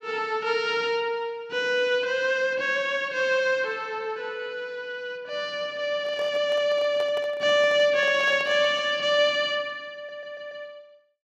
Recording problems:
handling noise; from 6 to 9 s; peak -10 dB vs average level
audio stuttering; at 10 s

